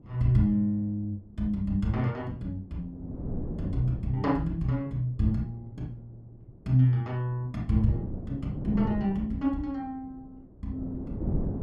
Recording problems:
wind on the microphone; below 260 Hz, SNR 8 dB

